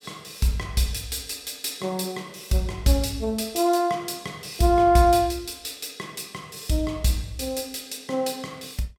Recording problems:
none

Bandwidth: 17.5 kHz